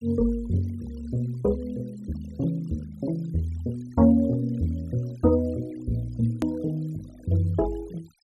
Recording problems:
denoising artefacts; signal-to-artefact ratio 25 dB
edit click; at 6.5 s

